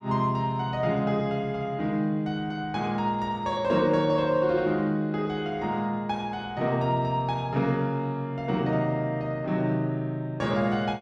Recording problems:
none

